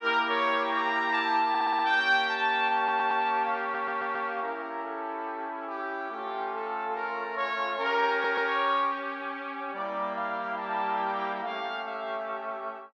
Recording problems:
stutter; 4 times, first at 1.5 s

